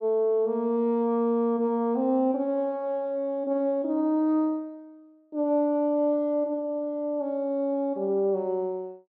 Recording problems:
none

